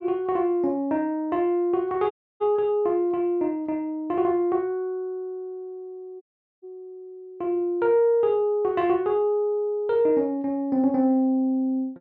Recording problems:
dropout; at 2 s and at 6 s

